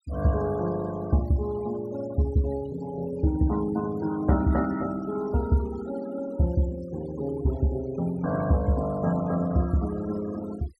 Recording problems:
noise reduction artefacts; signal-to-artefact ratio 18 dB

